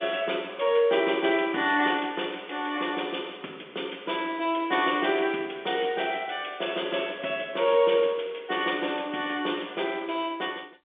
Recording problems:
telephone audio; 240 Hz to 3.6 kHz, G.711

